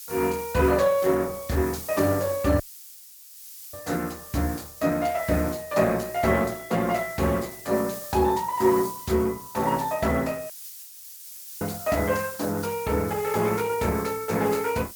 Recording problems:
lossy compression; Opus, log-spectral distance 3 dB
background hiss; slope +6 dB per octave, SNR 13 dB
dropout; at 2.5 s for 1 s and at 11 s for 1 s

